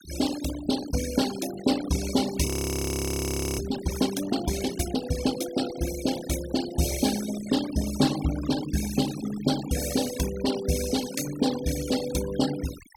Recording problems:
noise reduction artefacts; signal-to-artefact ratio 10 dB
audio freezing; at 2.5 s for 1 s

